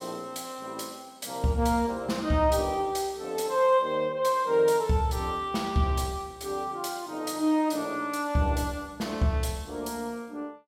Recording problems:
none

